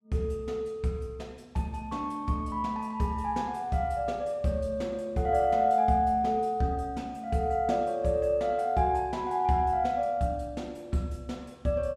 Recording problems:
none

